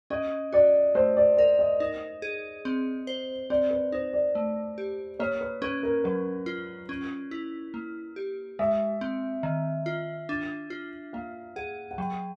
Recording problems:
none

